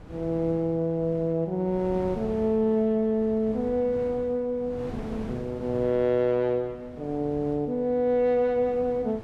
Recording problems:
wind noise; below 430 Hz, SNR 16 dB

